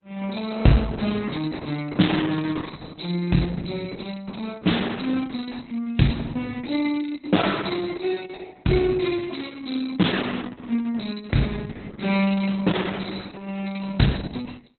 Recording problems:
codec artefacts; Opus, log-spectral distance 8 dB, nothing above 4.1 kHz

